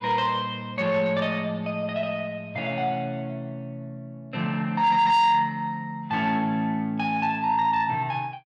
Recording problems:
distortion; soft clipping, signal-to-distortion ratio 10 dB

